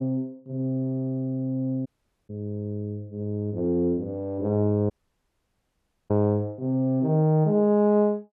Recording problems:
audio cutting out; at 2 s and at 5 s for 1 s

